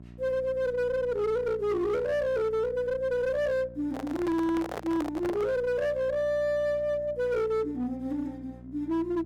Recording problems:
distorted audio; hard clipping, uneven, signal-to-distortion ratio 10 dB
hum; 60 Hz, harmonics up to 720 Hz, SNR 19 dB
microphone handling noise; from 4 to 5.5 s; peak -4 dB vs average level

